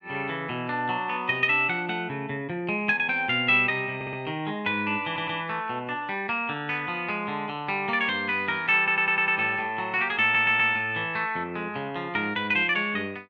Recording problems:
stutter; 4 times, first at 4 s

